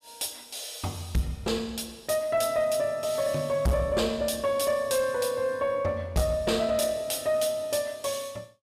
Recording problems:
distorted audio; soft clipping, signal-to-distortion ratio 12 dB

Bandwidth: 15.5 kHz